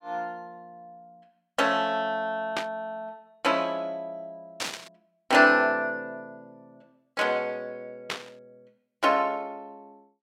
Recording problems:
burst of static; at 2.5 s, at 4.5 s and at 8 s; peak 0 dB vs average level

